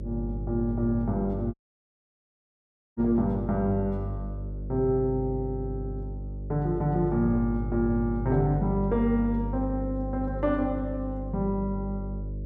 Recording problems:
hum; 50 Hz, harmonics up to 600 Hz, SNR 7 dB
dropout; at 1.5 s for 1.5 s

